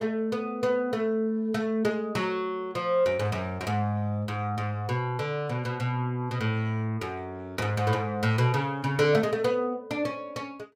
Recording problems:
none

